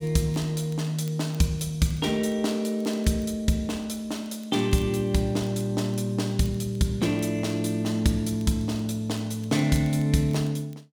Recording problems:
crackle; vinyl, SNR 29 dB

